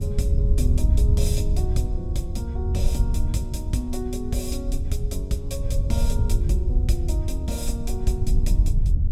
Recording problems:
low-frequency rumble; below 60 Hz, SNR 8 dB
wind noise; below 80 Hz, SNR -5 dB

